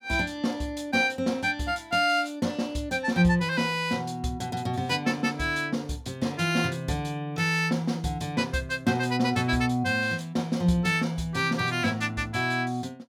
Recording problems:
none

